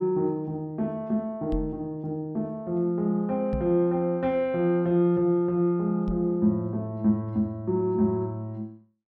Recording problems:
microphone bump; at 1.5 s, at 3.5 s and at 6 s; peak -1 dB vs average level

